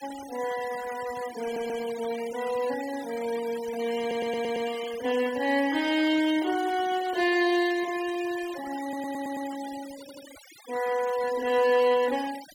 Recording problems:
denoising artefacts; signal-to-artefact ratio 16 dB
stutter; 4 times, first at 1.5 s

